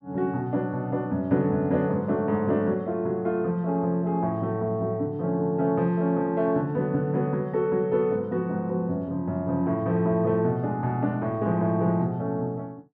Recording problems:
none

